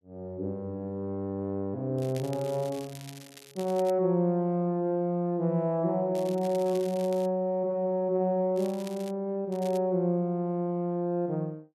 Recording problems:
crackle; 4 times, first at 2 s; loose cable, SNR 20 dB

